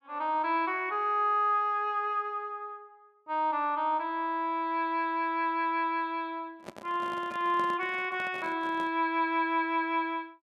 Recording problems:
handling noise; from 6.5 to 9 s; peak -8 dB vs average level

